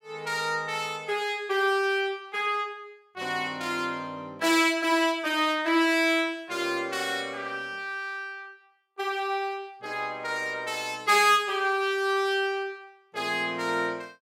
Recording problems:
none

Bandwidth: 16.5 kHz